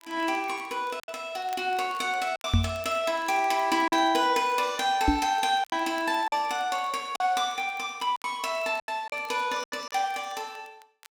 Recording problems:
crackling; vinyl, SNR 26 dB
packet loss; 6% of the sound replaced, filled with silence
knock on the microphone; at 2.5 s and at 5 s; peak +7 dB vs average level

